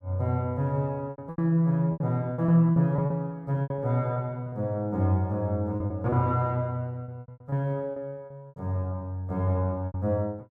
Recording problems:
lost packets; 11% of the sound replaced, filled with repeated pitch periods

